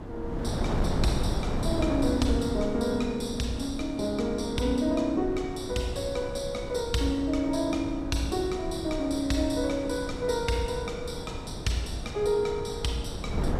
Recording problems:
wind on the microphone; below 350 Hz, SNR 6 dB

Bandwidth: 14.5 kHz